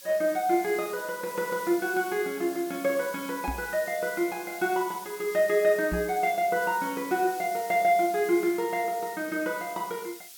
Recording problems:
hiss; SNR 15 dB
microphone bump; at 3.5 s and at 6 s; peak -2 dB vs average level

